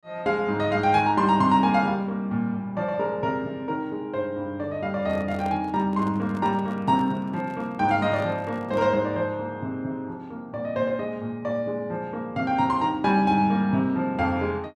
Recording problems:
microphone handling noise; from 5 to 9 s; peak -9 dB vs average level

